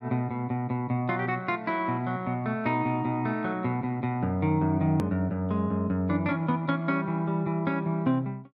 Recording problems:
edit click; at 5 s

